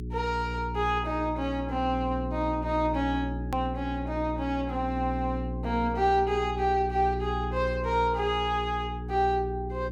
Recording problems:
hum; 60 Hz, harmonics up to 420 Hz, SNR 7 dB
edit click; at 3.5 s

